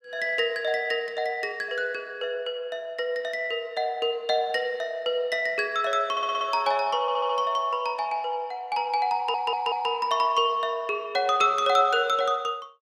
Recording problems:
stutter; at 6 s, at 7 s and at 9 s

